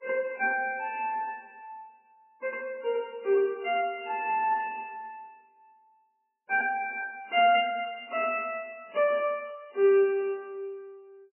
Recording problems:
lossy compression; MP3, log-spectral distance 3 dB, nothing above 2.4 kHz

